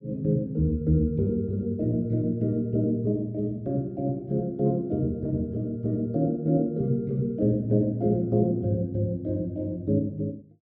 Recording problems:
none

